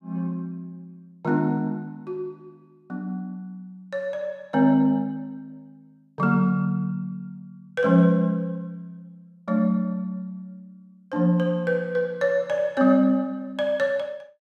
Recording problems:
none

